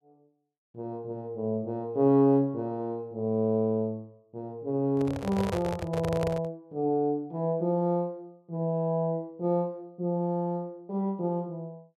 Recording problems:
microphone handling noise; from 5 to 6.5 s; peak +1 dB vs average level

